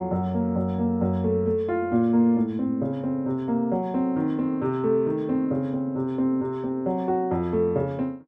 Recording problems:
none

